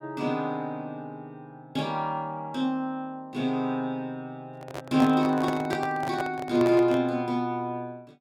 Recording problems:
handling noise; from 4.5 to 7 s; peak -1 dB vs average level

